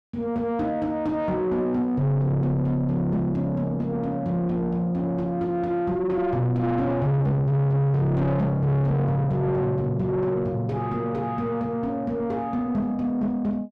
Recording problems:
distorted audio; soft clipping, signal-to-distortion ratio 7 dB

